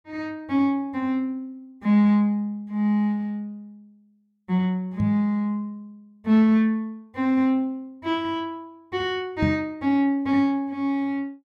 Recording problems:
knock on the microphone; at 5 s and at 9.5 s; peak +3 dB vs average level

